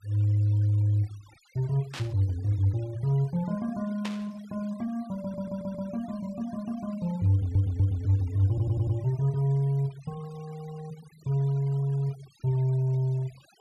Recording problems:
denoising artefacts; signal-to-artefact ratio 26 dB
burst of static; at 2 s and at 4 s; peak -5 dB vs average level
audio stuttering; at 5 s, at 7.5 s and at 8.5 s

